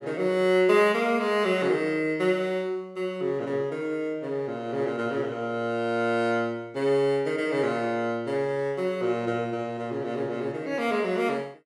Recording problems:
none

